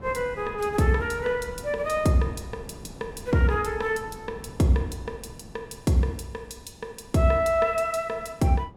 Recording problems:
wind on the microphone; below 320 Hz, SNR 19 dB

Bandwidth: 17 kHz